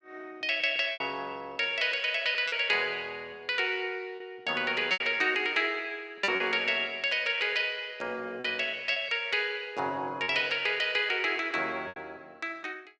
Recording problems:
lost packets; 4% of the sound replaced, filled with repeated pitch periods

